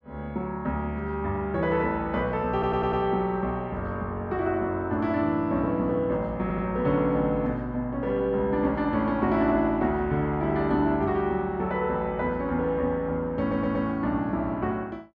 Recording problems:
audio stuttering; at 2.5 s, at 6.5 s and at 13 s

